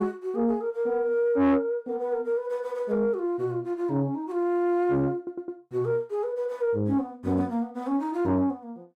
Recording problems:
distortion; soft clipping, signal-to-distortion ratio 11 dB
stutter; at 5 s

